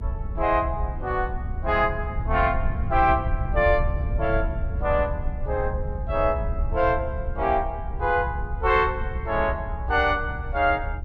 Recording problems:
low-frequency rumble; below 86 Hz, SNR 5 dB

